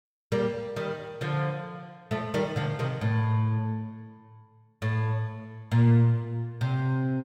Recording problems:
none

